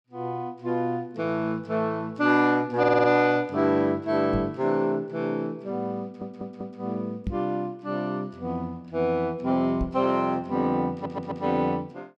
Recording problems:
stutter; at 3 s, at 6 s and at 11 s
microphone thump; at 4.5 s, at 7.5 s and at 10 s; peak -1 dB vs average level

